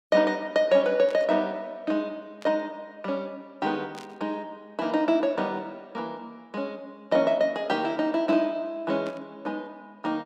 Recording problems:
static burst; 4 times, first at 1 s; peak -12 dB vs average level

